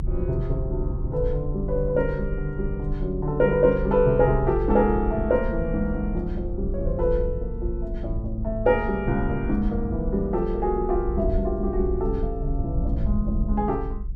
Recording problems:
low-frequency rumble; below 60 Hz, strongest tone 32 Hz, SNR 6 dB

